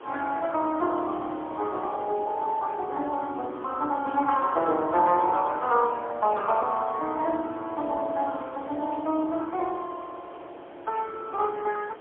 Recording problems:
phone line; 240 Hz to 3.4 kHz, AMR-NB, then MP3
hiss; SNR 19 dB
burst of static; at 4 s and at 9 s; peak -19 dB vs average level

